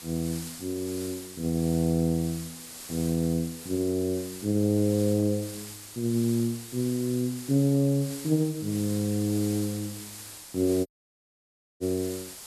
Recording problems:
background hiss; slope 0 dB per octave, SNR 12 dB
dropout; at 11 s for 1 s

